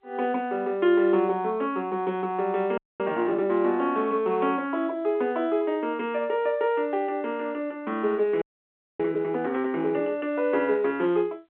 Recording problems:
phone line; 240 Hz to 3.6 kHz, G.711
audio freezing; at 3 s and at 8.5 s for 0.5 s

